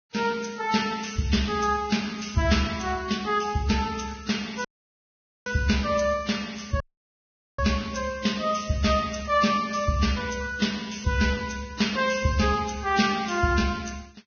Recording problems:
codec artefacts; Vorbis, log-spectral distance 6 dB, nothing above 6.3 kHz
dropout; at 4.5 s for 1 s and at 7 s for 1 s

